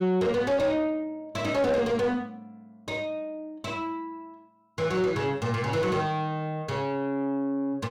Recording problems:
distortion; soft clipping, signal-to-distortion ratio 7 dB

